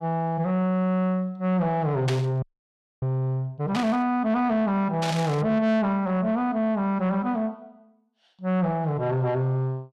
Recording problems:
distorted audio; soft clipping, signal-to-distortion ratio 11 dB
burst of static; at 2 s, at 3.5 s and at 5 s; peak -2 dB vs average level
audio freezing; at 2.5 s for 0.5 s

